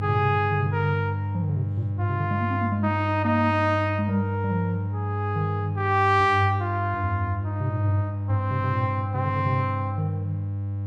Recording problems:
hum; 50 Hz, harmonics up to 500 Hz, SNR 3 dB

